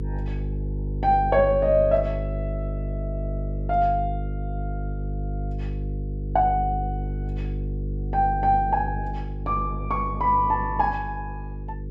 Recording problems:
mains hum; 50 Hz, harmonics up to 500 Hz, SNR 6 dB

